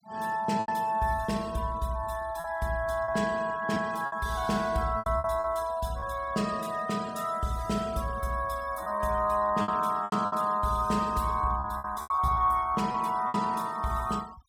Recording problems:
noise reduction artefacts; signal-to-artefact ratio 21 dB
packet loss; 7% of the sound replaced, filled with repeated pitch periods

